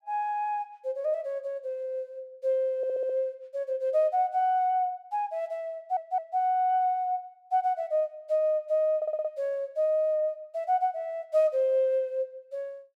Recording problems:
audio stuttering; at 3 s, at 6 s and at 9 s

